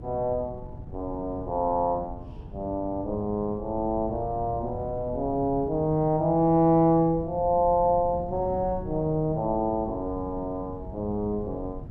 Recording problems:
wind on the microphone; below 180 Hz, SNR 14 dB

